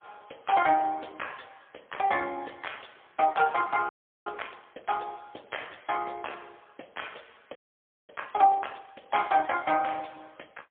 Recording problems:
telephone audio; 300 Hz to 3.3 kHz, AMR-NB, then MP3
frozen audio; at 4 s and at 7.5 s for 0.5 s

